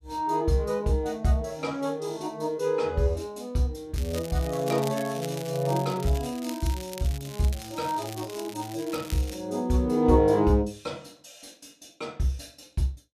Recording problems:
crackle; from 4 to 9.5 s; loose cable, SNR 15 dB

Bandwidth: 14.5 kHz